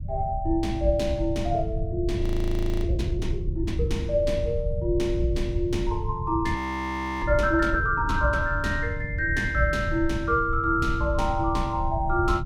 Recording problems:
rumble; below 100 Hz, SNR 5 dB
audio freezing; at 2 s for 0.5 s and at 6.5 s for 0.5 s

